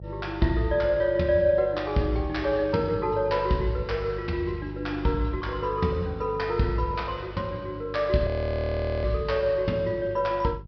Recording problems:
low-pass filter; nothing above 5.5 kHz
electrical hum; 50 Hz, harmonics up to 400 Hz, SNR 15 dB
frozen audio; at 8.5 s for 1 s

